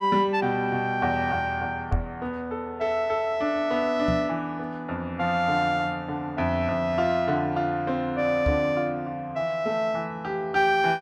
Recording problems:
microphone thump; at 2 s, at 4 s and at 8.5 s; peak +3 dB vs average level

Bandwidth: 14.5 kHz